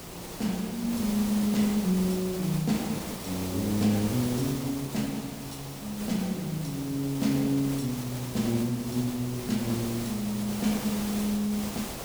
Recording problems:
hiss; SNR 8 dB

